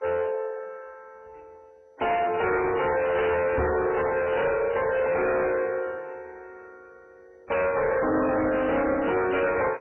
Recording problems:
lossy codec; MP3, then MP2, log-spectral distance 4 dB, nothing above 2.6 kHz
distortion; hard clipping, signal-to-distortion ratio 7 dB
microphone bump; at 3.5 s; peak +1 dB vs average level

